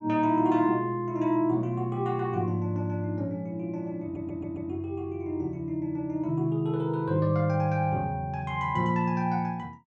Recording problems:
stutter; at 4 s

